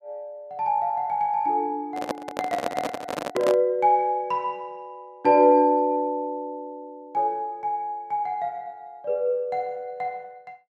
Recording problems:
handling noise; from 2 to 3.5 s; peak +1 dB vs average level

